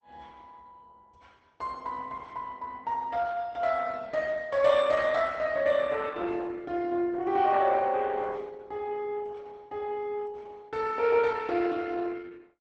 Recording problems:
codec artefacts; Opus, log-spectral distance 3 dB, nothing above 8.2 kHz

